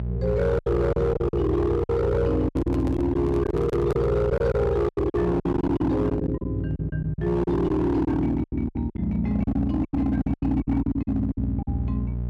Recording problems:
distorted audio; hard clipping, signal-to-distortion ratio 11 dB
hum; 60 Hz, harmonics up to 420 Hz, SNR 6 dB
packet loss; 14% of the sound replaced, filled with silence
microphone handling noise; from 2.5 to 4 s; peak -2 dB vs average level

